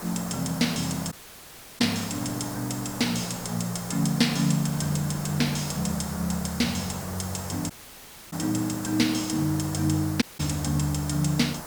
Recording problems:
background hiss; SNR 10 dB
wind on the microphone; below 1.7 kHz, SNR 26 dB
dropout; at 1 s for 0.5 s, at 7.5 s for 0.5 s and at 10 s

